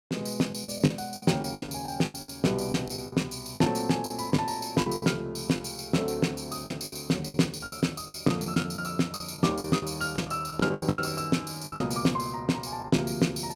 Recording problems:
lost packets; 14% of the sound replaced, filled with the last packet

